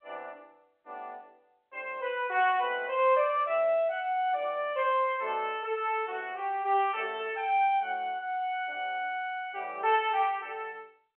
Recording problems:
phone line; 300 Hz to 3.3 kHz, G.711

